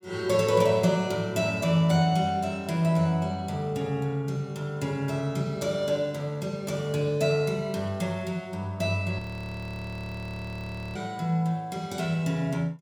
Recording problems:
audio freezing; at 9 s for 2 s

